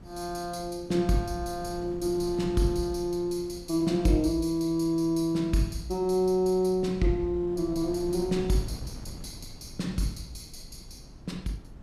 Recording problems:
wind noise; below 210 Hz, SNR 17 dB

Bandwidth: 15.5 kHz